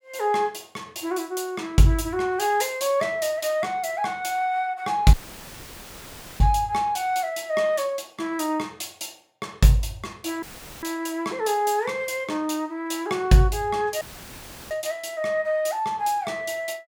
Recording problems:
audio cutting out; at 5 s for 1.5 s, at 10 s and at 14 s for 0.5 s; filled with static

